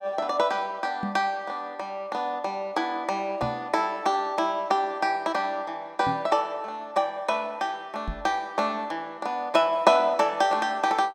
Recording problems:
microphone bump; 4 times, first at 1 s; peak -2 dB vs average level

